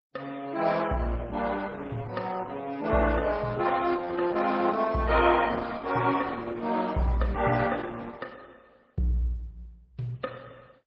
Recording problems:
lossy codec; MP3, then Opus, log-spectral distance 3 dB

